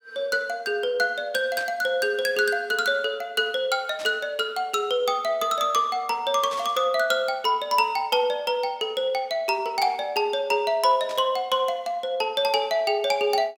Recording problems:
static burst; 4 times, first at 1.5 s; peak -10 dB vs average level

